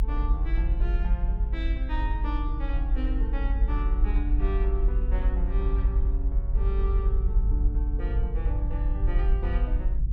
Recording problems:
rumble; below 52 Hz, SNR -10 dB

